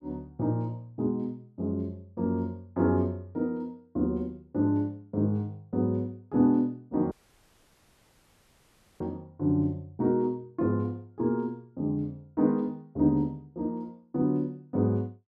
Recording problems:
dropout; at 7 s for 2 s

